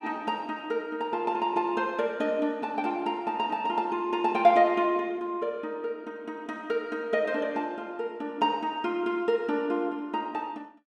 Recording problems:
none

